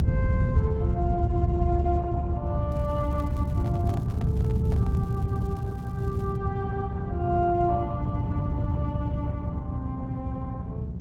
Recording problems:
lossy compression; Opus, log-spectral distance 2 dB
mains hum; 60 Hz, harmonics up to 660 Hz, SNR 4 dB
low-frequency rumble; below 130 Hz, SNR -5 dB
crackle; from 2.5 to 6.5 s; loose cable, SNR 26 dB
handling noise; from 3.5 to 5 s; peak -5 dB vs average level

